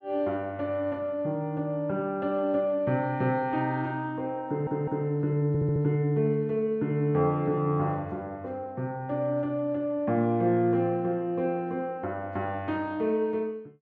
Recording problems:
stutter; at 4.5 s and at 5.5 s

